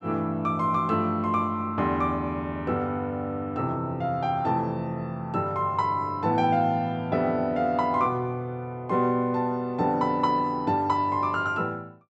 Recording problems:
none

